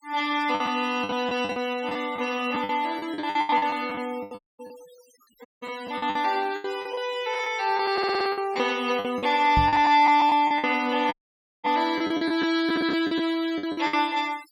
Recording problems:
noise reduction artefacts; signal-to-artefact ratio 20 dB
packet loss; 15% of the sound replaced, filled with the last packet
audio cutting out; at 4.5 s, at 5.5 s and at 11 s for 0.5 s
stutter; at 8 s
microphone thump; at 9.5 s; peak +2 dB vs average level

